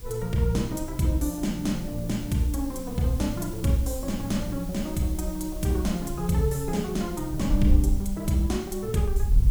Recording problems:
electrical hum; 50 Hz, harmonics up to 450 Hz, SNR 26 dB
hiss; SNR 18 dB
wind on the microphone; below 62 Hz, SNR 7 dB

